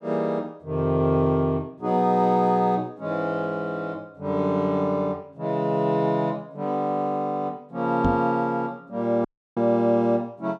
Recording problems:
microphone bump; at 8 s; peak +4 dB vs average level
dropout; at 9.5 s

